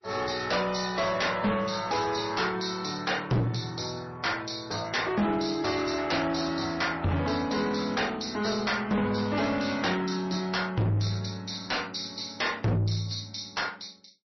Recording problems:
lossy compression; MP3, then MP3, log-spectral distance 7 dB, nothing above 5.8 kHz
distortion; soft clipping, signal-to-distortion ratio 6 dB

